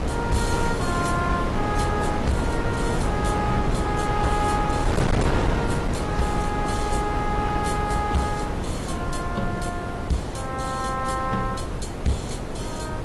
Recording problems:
codec artefacts; AAC, log-spectral distance 3 dB, nothing above 11 kHz
distortion; hard clipping, signal-to-distortion ratio 11 dB
background hiss; slope -2 dB per octave, SNR 24 dB
wind noise; below 580 Hz, SNR -1 dB

